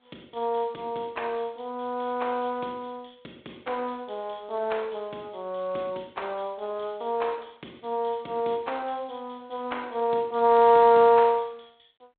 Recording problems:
phone line; 260 Hz to 3.6 kHz, G.726

